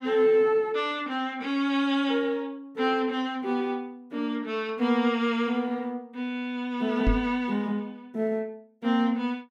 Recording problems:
microphone thump; at 7 s; peak +5 dB vs average level

